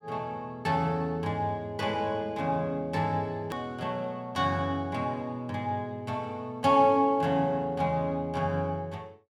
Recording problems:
edit click; at 3.5 s

